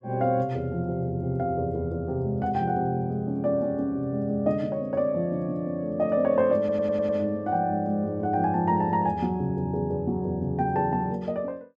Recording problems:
audio stuttering; at 6.5 s

